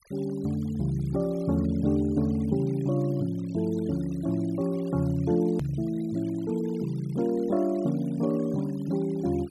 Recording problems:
noise reduction artefacts; signal-to-artefact ratio 24 dB
click at an edit; at 5.5 s

